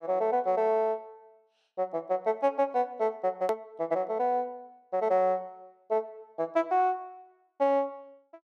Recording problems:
hard cut with a click; at 3.5 s

